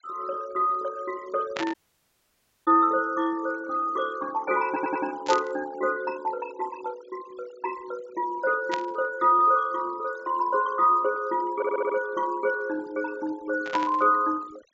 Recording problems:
treble missing; nothing above 7.5 kHz
denoising artefacts; signal-to-artefact ratio 19 dB
burst of static; 4 times, first at 1.5 s; peak -2 dB vs average level
dropout; at 1.5 s for 1 s
stutter; at 4.5 s and at 12 s

